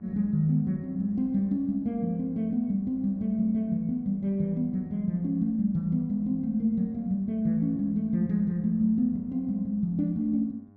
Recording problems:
electrical hum; 50 Hz, harmonics up to 1.1 kHz, SNR 26 dB

